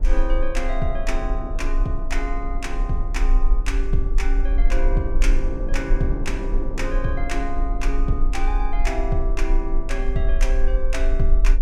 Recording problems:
low-frequency rumble; below 36 Hz, strongest tone 20 Hz, SNR -3 dB
wind on the microphone; below 330 Hz, SNR 7 dB

